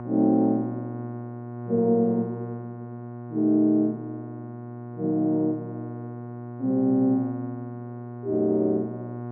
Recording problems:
hum; 60 Hz, harmonics up to 1.4 kHz, SNR 12 dB

